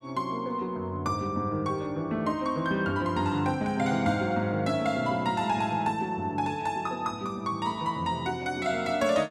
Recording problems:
none

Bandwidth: 13.5 kHz